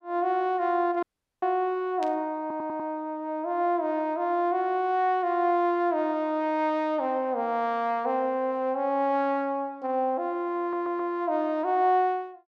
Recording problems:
dropout; at 1 s
static burst; at 2 s; peak -11 dB vs average level
stutter; at 2.5 s and at 11 s

